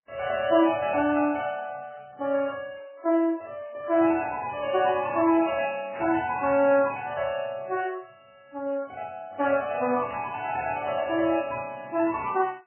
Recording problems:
lossy codec; Vorbis, then MP3, log-spectral distance 3 dB, nothing above 2.5 kHz
static burst; at 4 s, at 6 s and at 10 s; peak -11 dB vs average level

